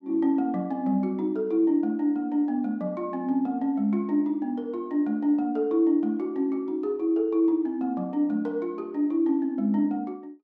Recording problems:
none

